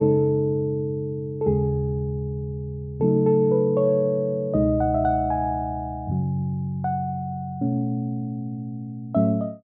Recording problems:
none

